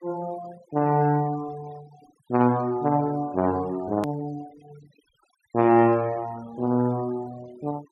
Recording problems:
noise reduction artefacts; signal-to-artefact ratio 24 dB
edit click; at 4 s

